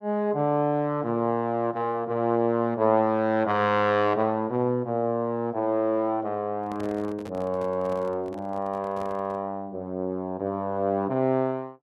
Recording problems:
microphone handling noise; from 6.5 to 9.5 s; peak -10 dB vs average level

